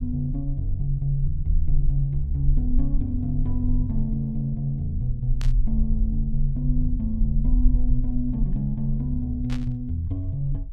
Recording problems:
rumble; below 42 Hz, strongest tone 26 Hz, SNR 2 dB
static burst; at 5.5 s and at 9.5 s; peak -7 dB vs average level

